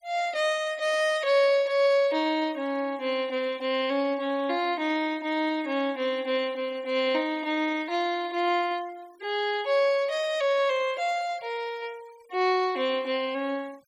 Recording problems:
noise reduction artefacts; signal-to-artefact ratio 24 dB

